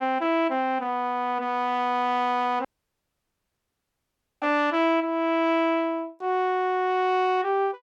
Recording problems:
dropout; at 2.5 s for 2 s

